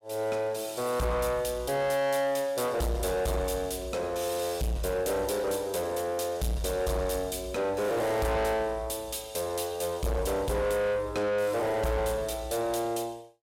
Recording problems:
distorted audio; soft clipping, signal-to-distortion ratio 8 dB

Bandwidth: 16 kHz